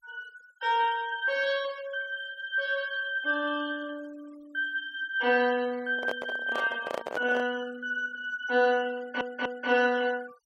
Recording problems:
noise reduction artefacts; signal-to-artefact ratio 24 dB
handling noise; from 6 to 7.5 s; peak -1 dB vs average level
audio stuttering; at 9 s

